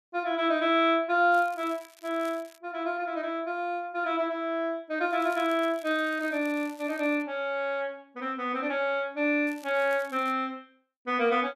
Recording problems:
crackling; from 1.5 to 2.5 s, from 5 to 7 s and at 9.5 s; loose cable, SNR 25 dB

